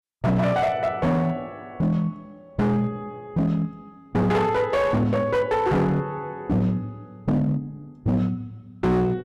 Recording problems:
distortion; hard clipping, uneven, signal-to-distortion ratio 8 dB

